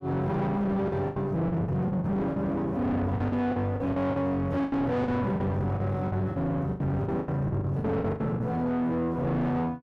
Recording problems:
distorted audio; soft clipping, signal-to-distortion ratio 5 dB
lost packets; 14% of the sound replaced, filled with the last packet

